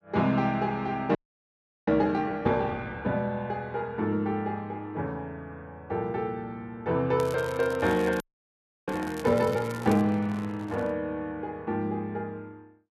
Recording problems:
frozen audio; at 1 s for 0.5 s and at 8 s for 0.5 s
crackling; from 7 to 10 s; loose cable, SNR 19 dB
microphone handling noise; from 7.5 to 11 s; peak -11 dB vs average level

